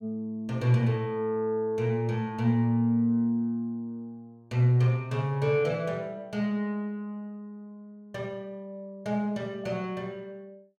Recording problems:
none

